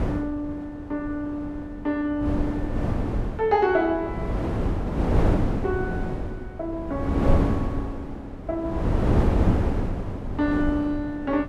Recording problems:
wind noise; below 320 Hz, SNR -1 dB

